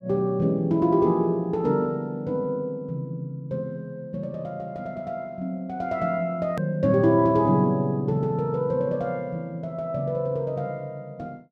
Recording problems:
hard cut with a click; at 6.5 s

